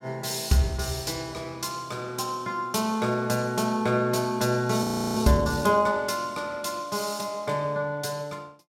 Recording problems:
audio freezing; at 5 s

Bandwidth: 16.5 kHz